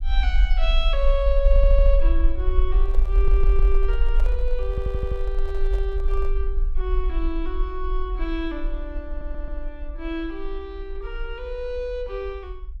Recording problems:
rumble; below 46 Hz, strongest tone 20 Hz, SNR -6 dB
audio stuttering; 4 times, first at 1.5 s
microphone handling noise; from 3 to 6.5 s; peak -5 dB vs average level

